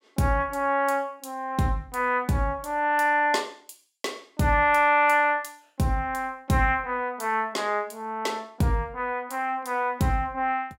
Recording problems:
none

